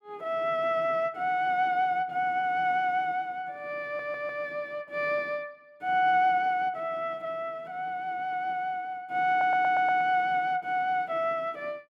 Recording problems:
audio stuttering; at 4 s and at 9.5 s

